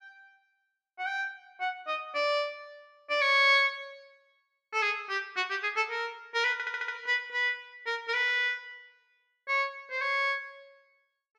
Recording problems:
stutter; at 6.5 s

